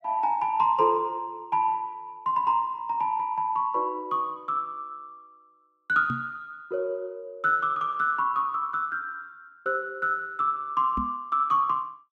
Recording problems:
microphone thump; at 6 s and at 11 s; peak -3 dB vs average level

